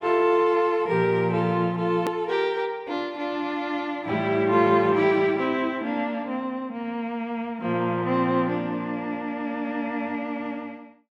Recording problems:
edit click; at 2 s

